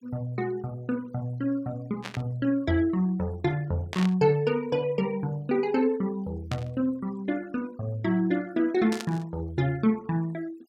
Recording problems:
denoising artefacts; signal-to-artefact ratio 27 dB
static burst; 4 times, first at 2 s; peak -3 dB vs average level

